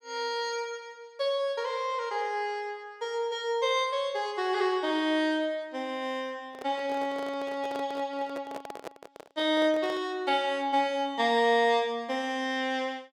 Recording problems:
handling noise; from 6.5 to 10 s; peak -6 dB vs average level

